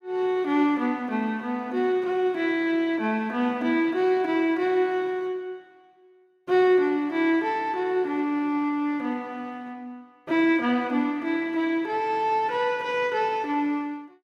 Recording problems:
none

